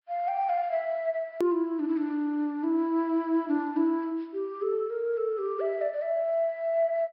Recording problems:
low-pass filter; nothing above 5.5 kHz
hard cut with a click; at 1.5 s

